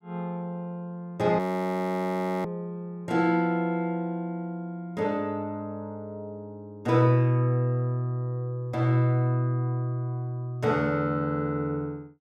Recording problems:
audio freezing; at 1.5 s for 1 s

